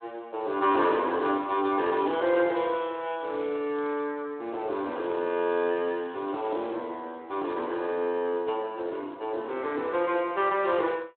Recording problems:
phone line; 260 Hz to 3.7 kHz, Speex
crackle; from 1 to 4 s and from 5 to 7 s; loose cable, SNR 27 dB

